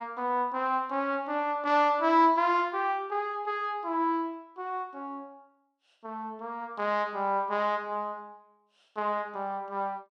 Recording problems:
none

